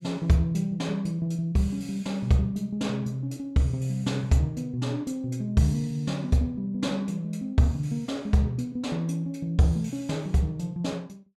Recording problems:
none

